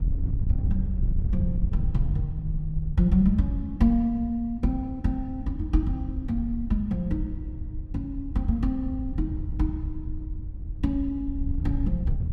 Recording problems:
wind noise; below 84 Hz, SNR 4 dB

